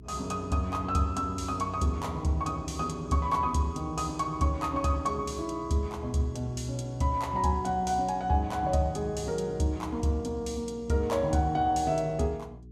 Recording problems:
electrical hum; 60 Hz, harmonics up to 420 Hz, SNR 19 dB

